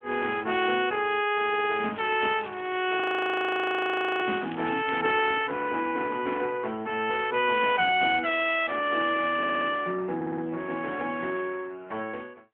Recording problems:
phone line; 190 Hz to 3.3 kHz, AMR-NB
audio stuttering; at 1.5 s, at 9.5 s and at 10 s
crackle; from 1.5 to 5 s; loose cable, SNR 21 dB
audio freezing; at 3 s for 1 s

